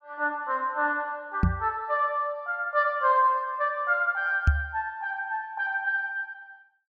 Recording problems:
microphone thump; at 1.5 s and at 4.5 s; peak +9 dB vs average level

